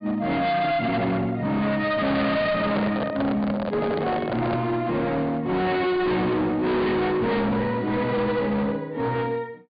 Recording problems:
treble cut off; nothing above 4.8 kHz
distorted audio; hard clipping, signal-to-distortion ratio 6 dB
microphone handling noise; from 2.5 to 4.5 s; peak 0 dB vs average level

